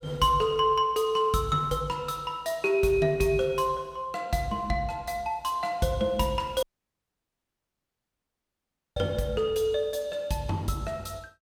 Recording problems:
audio cutting out; at 6.5 s for 2.5 s

